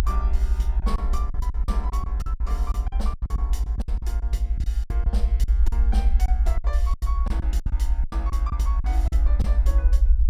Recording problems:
rumble; below 60 Hz, SNR -13 dB
lost packets; 14% of the sound replaced, filled with silence

